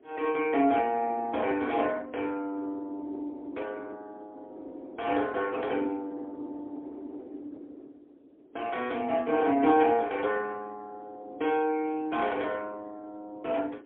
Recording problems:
phone line; 260 Hz to 3.3 kHz, AMR-NB, then MP3
wind noise; below 410 Hz, SNR 18 dB

